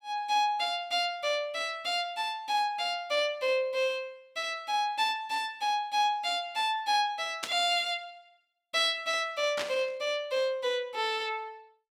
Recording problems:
burst of static; at 7.5 s and at 9.5 s; peak 0 dB vs average level

